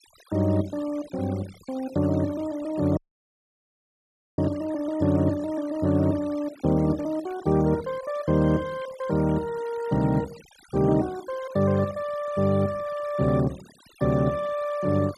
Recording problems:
denoising artefacts; signal-to-artefact ratio 21 dB
audio cutting out; at 3 s for 1.5 s

